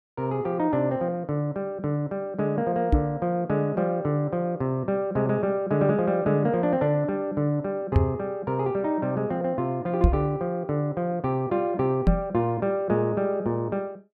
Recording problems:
knock on the microphone; 4 times, first at 3 s; peak +9 dB vs average level

